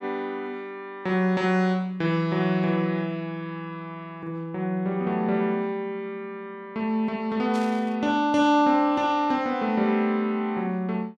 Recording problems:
burst of static; at 7.5 s; peak -12 dB vs average level

